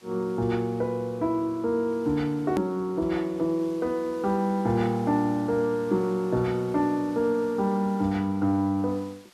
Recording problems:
hiss; slope 0 dB per octave, SNR 26 dB
edit click; at 2.5 s

